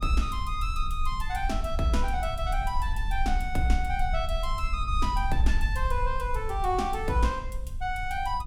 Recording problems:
rumble; below 52 Hz, SNR 3 dB

